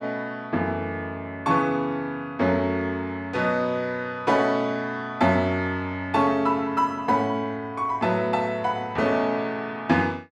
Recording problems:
none

